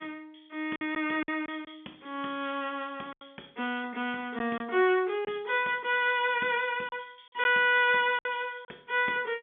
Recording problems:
telephone audio; 190 Hz to 3.4 kHz, G.711
packet loss; 5% of the sound replaced, filled with silence

